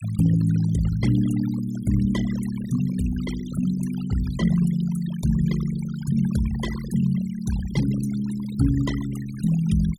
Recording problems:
denoising artefacts; signal-to-artefact ratio 16 dB

